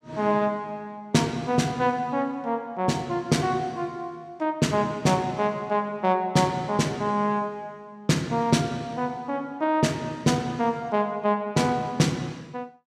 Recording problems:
none

